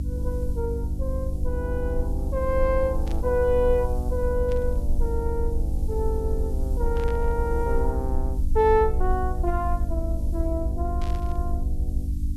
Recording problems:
electrical hum; 50 Hz, harmonics up to 300 Hz, SNR 6 dB
hiss; SNR 27 dB
low-frequency rumble; below 64 Hz, SNR 2 dB
static burst; 4 times, first at 3 s; peak -11 dB vs average level

